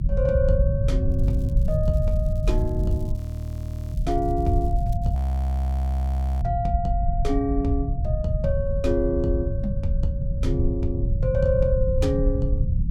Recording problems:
rumble; below 110 Hz, SNR -1 dB
crackling; from 1 to 5 s; loose cable, SNR 29 dB
audio freezing; at 3 s for 1 s and at 5 s for 1.5 s

